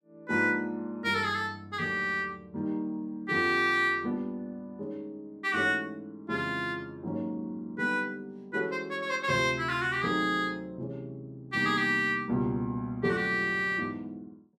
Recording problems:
none

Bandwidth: 14.5 kHz